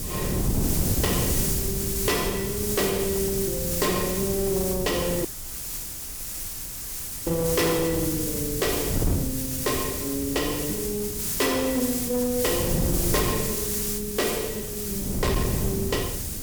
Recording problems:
distorted audio; hard clipping, uneven, signal-to-distortion ratio 11 dB
background hiss; slope +4 dB per octave, SNR 1 dB
wind noise; below 230 Hz, SNR 4 dB
dropout; at 5.5 s for 2 s

